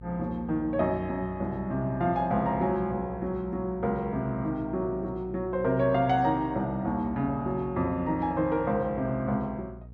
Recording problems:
hum; 60 Hz, harmonics up to 480 Hz, SNR 17 dB

